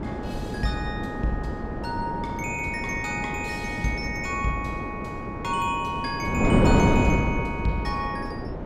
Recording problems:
wind noise; below 450 Hz, SNR -1 dB

